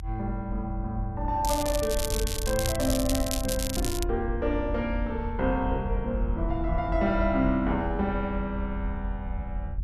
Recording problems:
low-frequency rumble; below 78 Hz, strongest tone 44 Hz, SNR 5 dB
crackle; from 1.5 to 4 s; loose cable, SNR 4 dB

